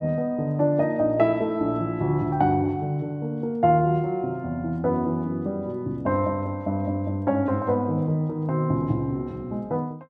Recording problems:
none

